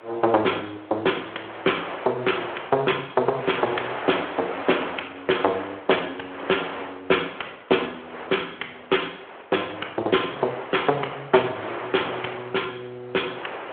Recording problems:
phone line; 300 Hz to 3.4 kHz, Speex
wind noise; below 1.8 kHz, SNR 10 dB

